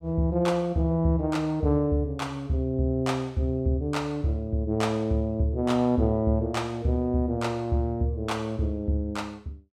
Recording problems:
none

